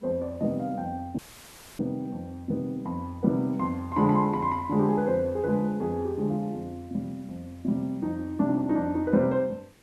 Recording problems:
hiss; SNR 30 dB
audio cutting out; at 1 s for 0.5 s; filled with static

